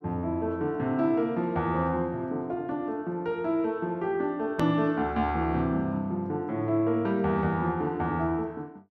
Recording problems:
edit click; at 4.5 s

